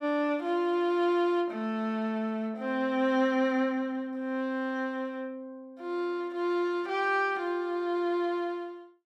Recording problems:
none

